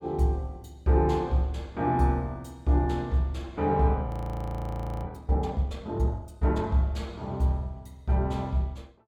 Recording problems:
audio freezing; at 4 s for 1 s

